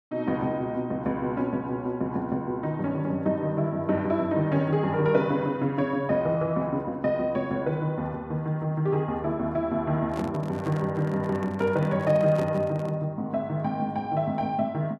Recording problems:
handling noise; from 10 to 13 s; peak -5 dB vs average level

